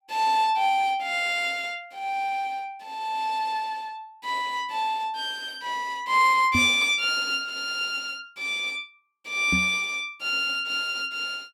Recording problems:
microphone thump; at 6.5 s and at 9.5 s; peak +1 dB vs average level

